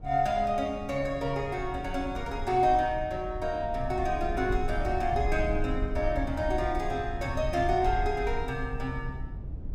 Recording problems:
rumble; below 78 Hz, SNR 8 dB

